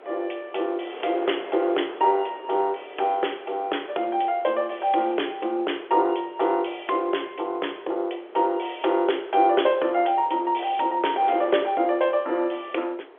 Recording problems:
telephone audio; 300 Hz to 3.5 kHz, G.711
wind noise; below 930 Hz, SNR 17 dB

